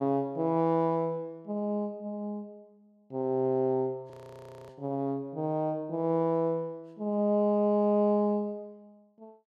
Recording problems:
audio freezing; at 4 s for 0.5 s

